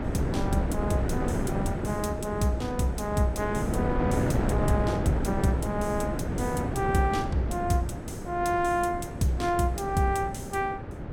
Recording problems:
wind noise; below 400 Hz, SNR 2 dB

